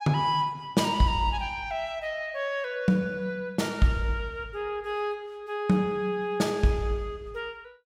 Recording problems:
none

